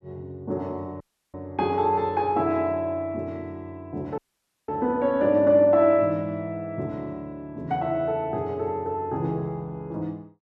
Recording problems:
dropout; at 1 s and at 4 s for 0.5 s

